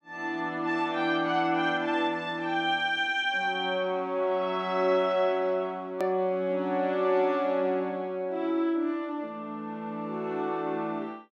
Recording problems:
edit click; at 6 s

